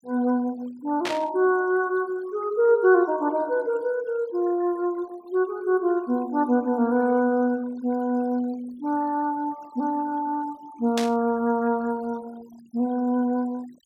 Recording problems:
denoising artefacts; signal-to-artefact ratio 25 dB
static burst; at 1 s and at 11 s; peak -1 dB vs average level

